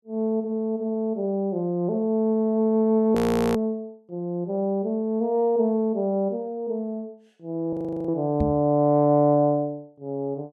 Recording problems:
audio freezing; at 3 s and at 7.5 s
knock on the microphone; at 8.5 s; peak +1 dB vs average level

